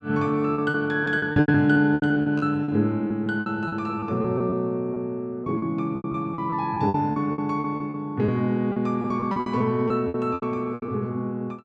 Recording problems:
packet loss; 16% of the sound replaced, filled with repeated pitch periods

